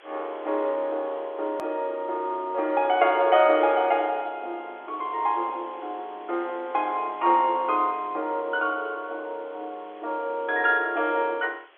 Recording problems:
telephone audio; 280 Hz to 3.5 kHz, G.711
hiss; SNR 27 dB
click at an edit; at 1.5 s

